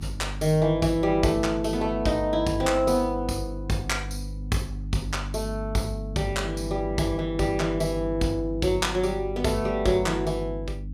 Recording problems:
electrical hum; 50 Hz, harmonics up to 300 Hz, SNR 9 dB

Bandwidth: 16.5 kHz